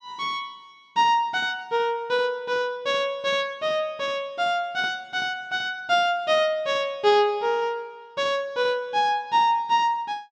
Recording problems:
none

